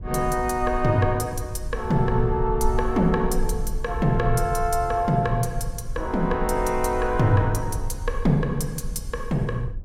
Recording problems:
rumble; below 56 Hz, strongest tone 22 Hz, SNR 9 dB

